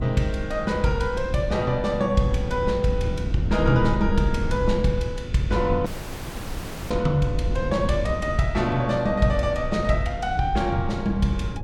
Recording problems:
electrical hum; 50 Hz, harmonics up to 550 Hz, SNR 22 dB
wind noise; below 130 Hz, SNR 7 dB
audio cutting out; at 6 s for 1 s

